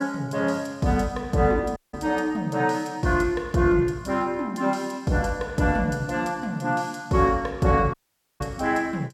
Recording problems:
dropout; at 2 s and at 8 s

